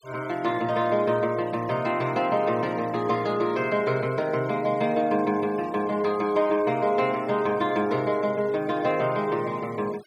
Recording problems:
denoising artefacts; signal-to-artefact ratio 22 dB

